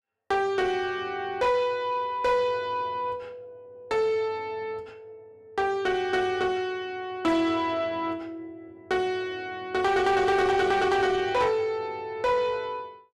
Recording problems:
distortion; soft clipping, signal-to-distortion ratio 11 dB

